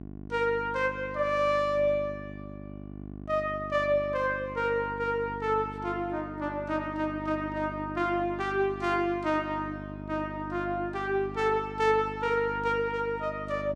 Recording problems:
hum; 50 Hz, harmonics up to 1.1 kHz, SNR 12 dB

